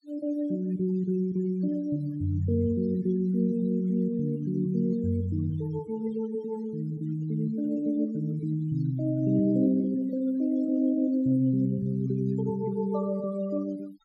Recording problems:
noise reduction artefacts; signal-to-artefact ratio 26 dB

